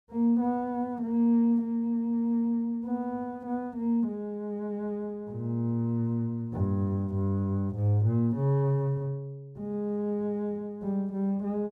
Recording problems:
none

